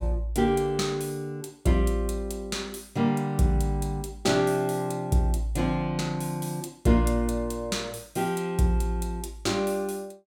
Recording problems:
none

